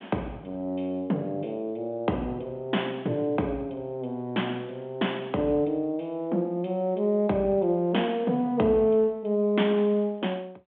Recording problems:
telephone audio; 130 Hz to 3.4 kHz, G.726

